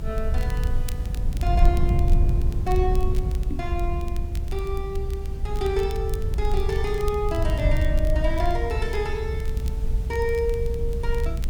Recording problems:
hiss; SNR 21 dB
low-frequency rumble; below 70 Hz, SNR -3 dB
crackling; vinyl, SNR 18 dB
knock on the microphone; at 3.5 s; peak 0 dB vs average level

